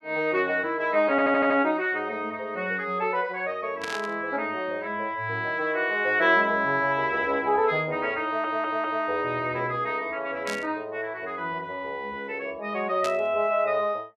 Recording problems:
stutter; at 1 s and at 8 s
burst of static; at 4 s, at 10 s and at 13 s; peak -5 dB vs average level

